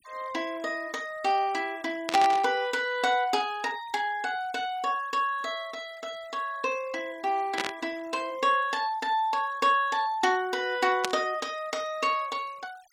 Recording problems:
denoising artefacts; signal-to-artefact ratio 24 dB
burst of static; at 2 s, at 7.5 s and at 11 s; peak +3 dB vs average level

